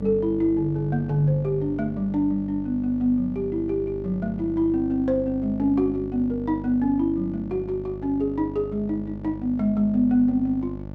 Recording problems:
electrical hum; 50 Hz, harmonics up to 900 Hz, SNR 12 dB

